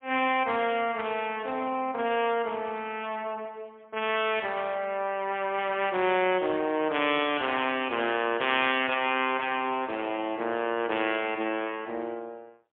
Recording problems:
phone line; 170 Hz to 3.5 kHz, AMR-NB, then MP3

